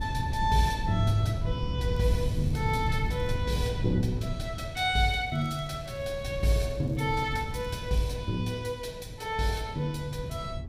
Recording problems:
wind noise; below 140 Hz, SNR 5 dB
crackling; from 2 to 3.5 s and from 5 to 8 s; loose cable, SNR 29 dB

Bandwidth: 15.5 kHz